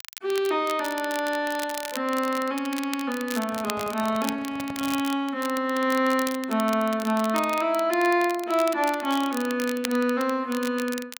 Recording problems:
crackling; vinyl, SNR 13 dB
handling noise; from 3.5 to 5 s; peak -10 dB vs average level

